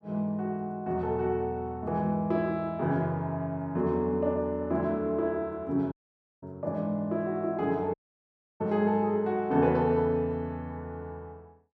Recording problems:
dropout; at 6 s for 0.5 s and at 8 s for 0.5 s

